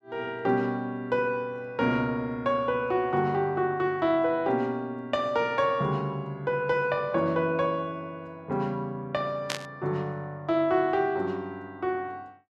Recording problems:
burst of static; at 9.5 s; peak +2 dB vs average level

